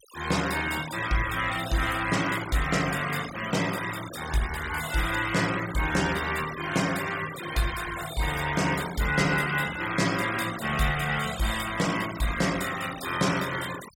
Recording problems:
noise reduction artefacts; signal-to-artefact ratio 10 dB

